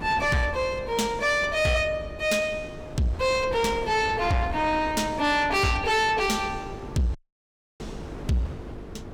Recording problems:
distorted audio; soft clipping, signal-to-distortion ratio 11 dB
electrical hum; 50 Hz, harmonics up to 450 Hz, SNR 20 dB
wind on the microphone; below 510 Hz, SNR 14 dB
audio cutting out; at 7 s for 0.5 s

